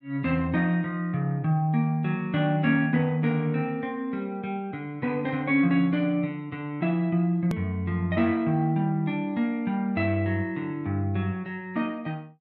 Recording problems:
edit click; at 7.5 s

